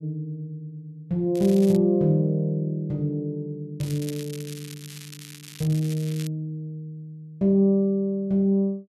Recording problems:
crackle; at 1.5 s and from 4 to 6.5 s; loose cable, SNR 18 dB

